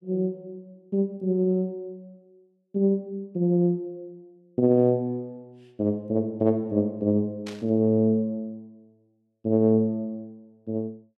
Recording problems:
burst of static; at 7.5 s; peak -10 dB vs average level

